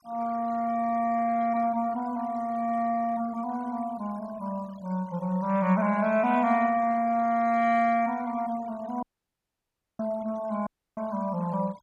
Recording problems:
denoising artefacts; signal-to-artefact ratio 23 dB
dropout; at 9 s for 1 s and at 11 s

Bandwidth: 15 kHz